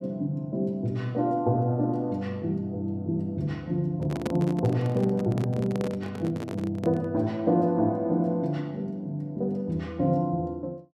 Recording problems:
microphone handling noise; from 4 to 7 s; peak +1 dB vs average level

